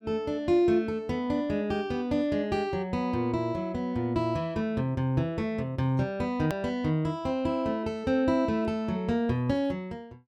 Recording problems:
click at an edit; at 6.5 s

